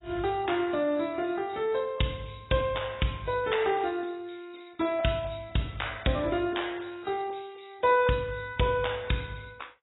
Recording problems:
lossy compression; AAC, log-spectral distance 8 dB, nothing above 3.8 kHz

